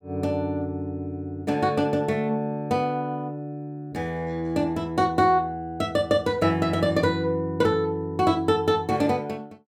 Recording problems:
none

